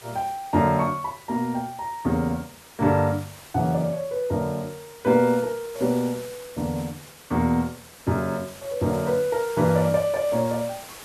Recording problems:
hiss; slope -2 dB per octave, SNR 18 dB

